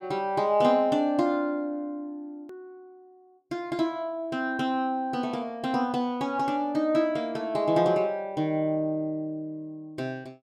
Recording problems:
click at an edit; at 2.5 s

